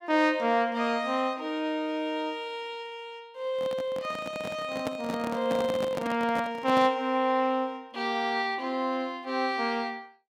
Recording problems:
handling noise; from 3.5 to 7 s; peak -1 dB vs average level

